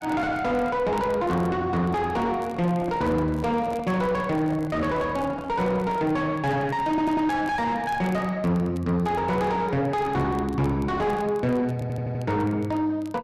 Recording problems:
distorted audio; soft clipping, signal-to-distortion ratio 6 dB
crackle; vinyl, SNR 29 dB
handling noise; from 2.5 to 6 s; peak -5 dB vs average level
stutter; at 7 s and at 12 s

